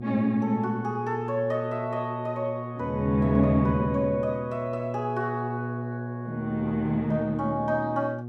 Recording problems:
electrical hum; 60 Hz, harmonics up to 720 Hz, SNR 8 dB

